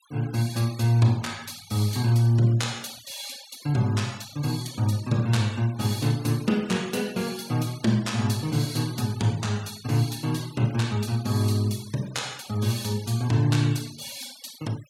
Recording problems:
noise reduction artefacts; signal-to-artefact ratio 20 dB

